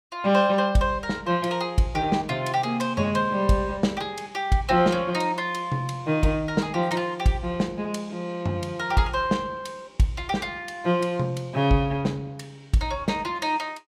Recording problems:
none

